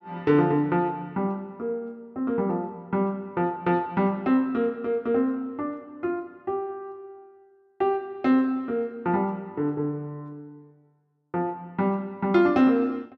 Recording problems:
none

